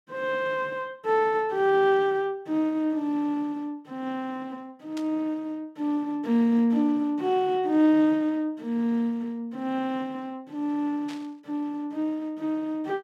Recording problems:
burst of static; at 5 s and at 11 s; peak -11 dB vs average level

